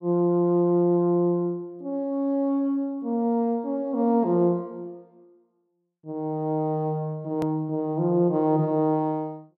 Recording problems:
click at an edit; at 7.5 s

